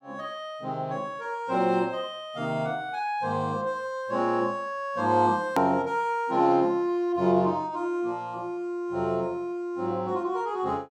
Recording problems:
click at an edit; at 5.5 s

